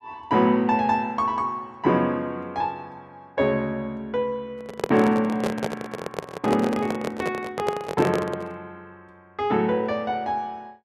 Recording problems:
microphone handling noise; from 4.5 to 8.5 s; peak +3 dB vs average level

